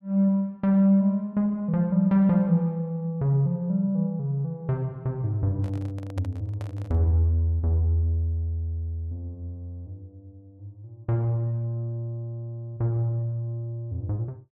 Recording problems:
microphone handling noise; from 5.5 to 7 s; peak -9 dB vs average level

